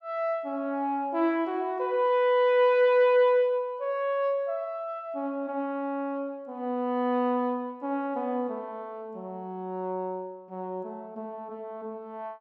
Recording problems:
none

